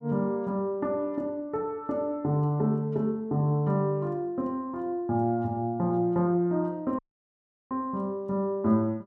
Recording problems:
dropout; at 7 s for 0.5 s

